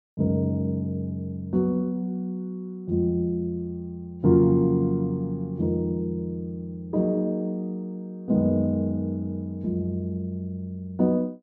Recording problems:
none

